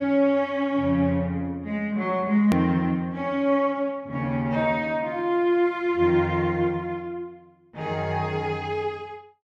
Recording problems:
click at an edit; at 2.5 s

